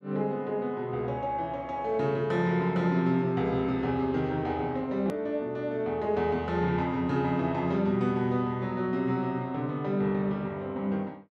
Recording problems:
click at an edit; at 5 s

